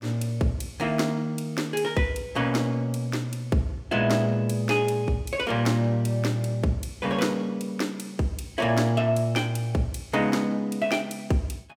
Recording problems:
none

